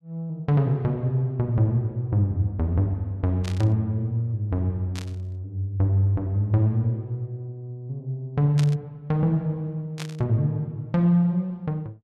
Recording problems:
burst of static; 4 times, first at 3.5 s; peak -6 dB vs average level

